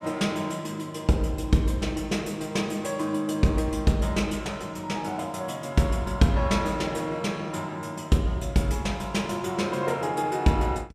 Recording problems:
none

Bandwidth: 14.5 kHz